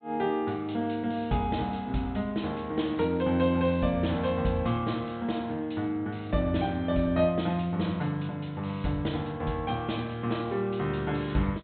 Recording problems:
treble missing; nothing above 4 kHz

